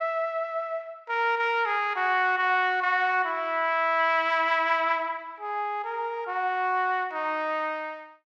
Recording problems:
none

